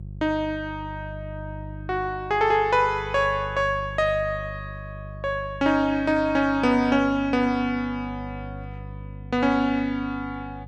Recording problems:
electrical hum; 50 Hz, harmonics up to 350 Hz, SNR 15 dB

